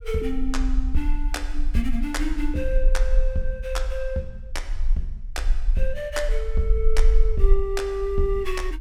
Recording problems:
low-frequency rumble; below 38 Hz, strongest tone 20 Hz, SNR -2 dB

